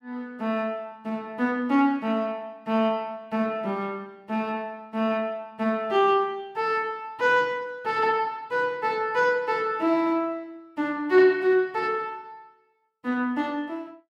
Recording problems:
none

